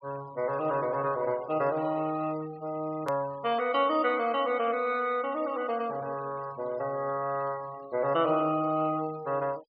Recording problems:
treble missing; nothing above 5.5 kHz
denoising artefacts; signal-to-artefact ratio 22 dB
click at an edit; at 3 s

